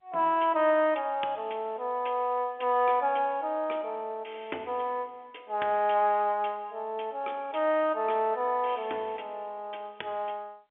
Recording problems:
telephone audio; 340 Hz to 3.5 kHz, G.711

